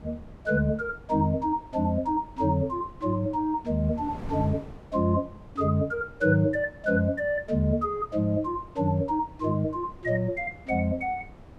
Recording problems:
wind noise; below 330 Hz, SNR 19 dB

